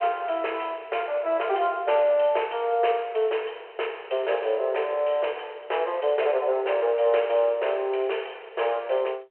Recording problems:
telephone audio; 340 Hz to 3.2 kHz, G.726

